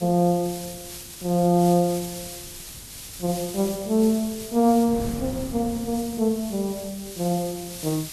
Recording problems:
background hiss; slope +3 dB per octave, SNR 13 dB
wind on the microphone; below 250 Hz, SNR 19 dB

